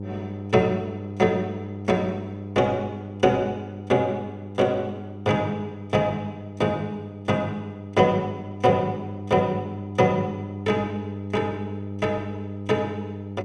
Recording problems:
hum; 50 Hz, harmonics up to 900 Hz, SNR 10 dB

